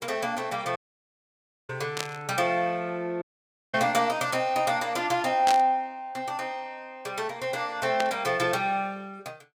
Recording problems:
dropout; at 1 s for 1 s and at 3 s for 0.5 s
static burst; at 2 s, at 5.5 s and at 8 s; peak +2 dB vs average level

